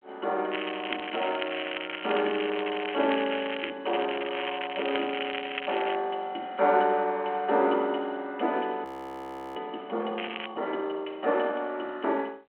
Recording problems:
phone line; 240 Hz to 3.3 kHz, G.726
crackle; from 0.5 to 3.5 s, from 4 to 6 s and at 10 s; loose cable, SNR 6 dB
frozen audio; at 9 s for 0.5 s

